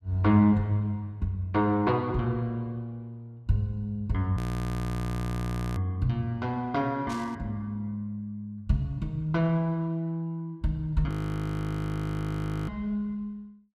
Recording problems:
frozen audio; at 4.5 s for 1.5 s and at 11 s for 1.5 s
burst of static; at 7 s; peak -10 dB vs average level

